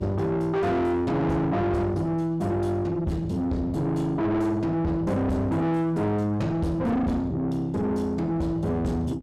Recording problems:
distorted audio; soft clipping, signal-to-distortion ratio 6 dB
hum; 60 Hz, harmonics up to 900 Hz, SNR 23 dB

